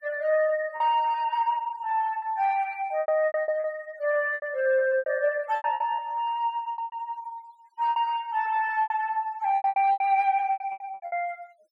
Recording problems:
noise reduction artefacts; signal-to-artefact ratio 24 dB
lost packets; 14% of the sound replaced, filled with repeated pitch periods

